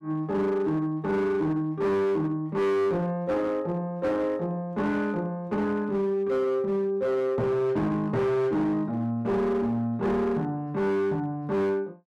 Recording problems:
distortion; hard clipping, signal-to-distortion ratio 10 dB

